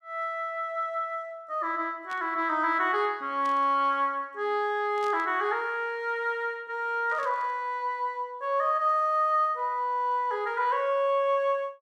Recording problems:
burst of static; 4 times, first at 2 s; peak -14 dB vs average level

